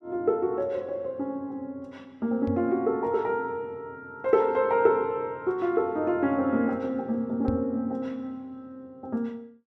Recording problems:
knock on the microphone; at 2.5 s and at 7.5 s; peak 0 dB vs average level

